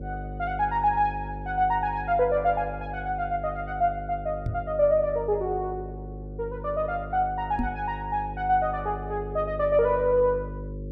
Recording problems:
electrical hum; 50 Hz, harmonics up to 550 Hz, SNR 11 dB
microphone bump; at 4.5 s and at 7.5 s; peak +2 dB vs average level

